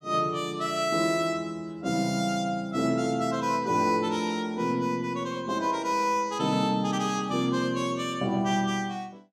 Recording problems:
none

